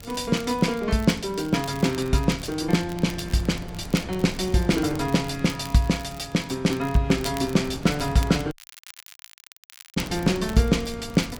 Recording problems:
wind noise; below 330 Hz, SNR 15 dB
crackle; vinyl, SNR 20 dB
audio cutting out; at 8.5 s for 1.5 s

